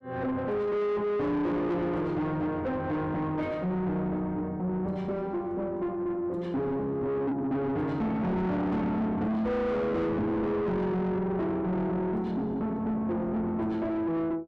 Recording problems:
distorted audio; soft clipping, signal-to-distortion ratio 6 dB

